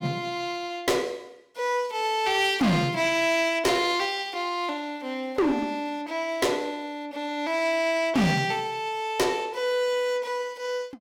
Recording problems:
distorted audio; hard clipping, uneven, signal-to-distortion ratio 10 dB

